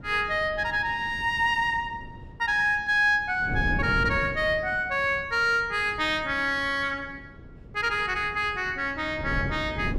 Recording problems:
wind noise; below 240 Hz, SNR 13 dB

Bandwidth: 14.5 kHz